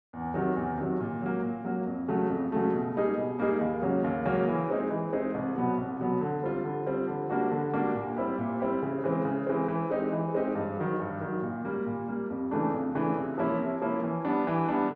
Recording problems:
none

